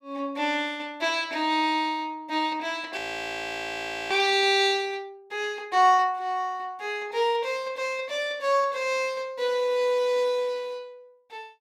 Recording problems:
frozen audio; at 3 s for 1 s

